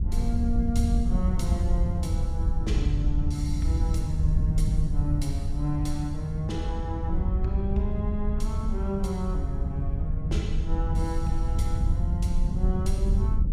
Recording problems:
wind noise; below 86 Hz, SNR -4 dB

